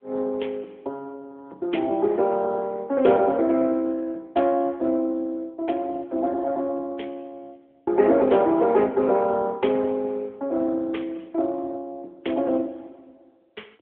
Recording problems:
telephone audio; 280 Hz to 3.3 kHz, AMR-NB

